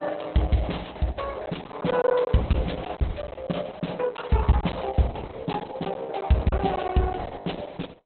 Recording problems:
lossy compression; Opus, log-spectral distance 5 dB, nothing above 4 kHz
packet loss; 5% of the sound replaced, filled with silence

